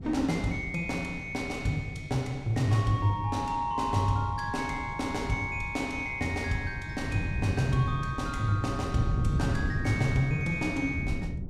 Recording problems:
wind on the microphone; below 170 Hz, SNR 7 dB

